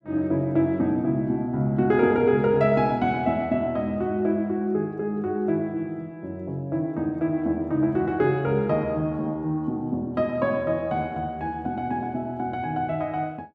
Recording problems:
none

